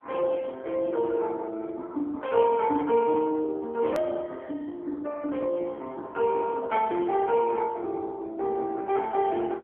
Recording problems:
telephone audio; 240 Hz to 3.1 kHz, AMR-NB
edit click; at 4 s

